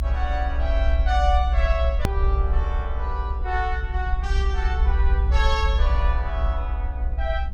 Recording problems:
rumble; below 64 Hz, SNR -5 dB
hard cut with a click; at 2 s

